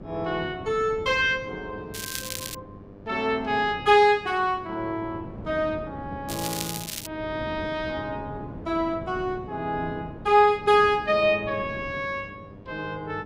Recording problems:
hum; 50 Hz, harmonics up to 1.7 kHz, SNR 25 dB
wind on the microphone; below 370 Hz, SNR 16 dB
crackling; at 2 s and at 6.5 s; loose cable, SNR 8 dB

